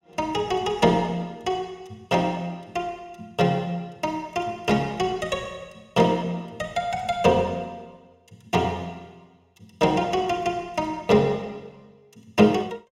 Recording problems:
none

